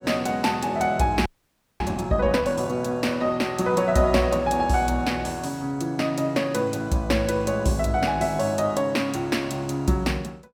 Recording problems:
audio freezing; at 1.5 s for 0.5 s

